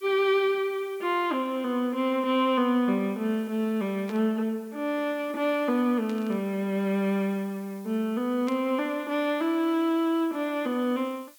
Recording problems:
background hiss; SNR 27 dB
static burst; at 4 s, at 6 s and at 8.5 s; peak -12 dB vs average level

